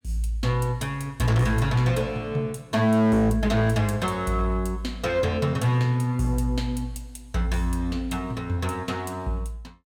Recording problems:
distorted audio; hard clipping, signal-to-distortion ratio 12 dB

